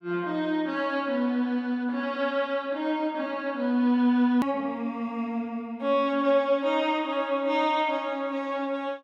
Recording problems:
click at an edit; at 4.5 s

